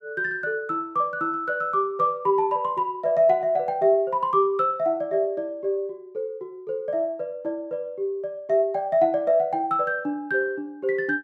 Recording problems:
none

